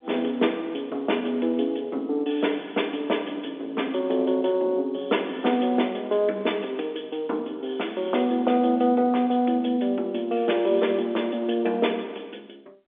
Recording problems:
telephone audio; 220 Hz to 3.5 kHz, G.711

